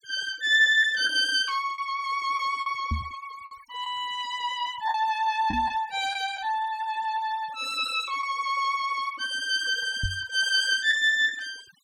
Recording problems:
denoising artefacts; signal-to-artefact ratio 21 dB
lost packets; 3% of the sound replaced, filled with the last packet
knock on the microphone; at 3 s, at 5.5 s and at 10 s; peak 0 dB vs average level

